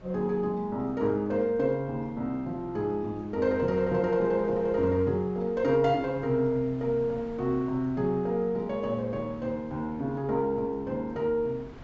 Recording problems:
treble cut off; nothing above 8 kHz
wind noise; below 520 Hz, SNR 21 dB

